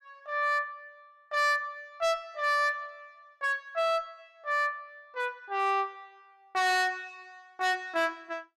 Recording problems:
distortion; hard clipping, signal-to-distortion ratio 11 dB

